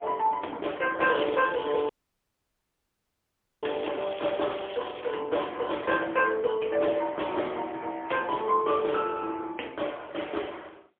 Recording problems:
phone line; 240 Hz to 3.4 kHz, AMR-NB, then MP3
crackle; from 1 to 5 s; loose cable, SNR 16 dB
audio cutting out; at 2 s for 1.5 s

